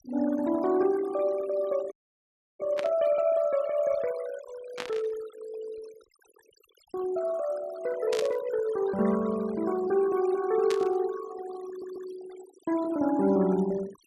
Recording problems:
noise reduction artefacts; signal-to-artefact ratio 16 dB
dropout; at 2 s for 0.5 s
burst of static; 4 times, first at 3 s; peak -3 dB vs average level
audio stuttering; at 12 s

